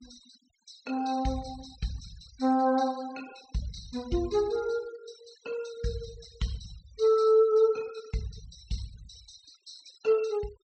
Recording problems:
treble cut off; nothing above 8 kHz
noise reduction artefacts; signal-to-artefact ratio 20 dB

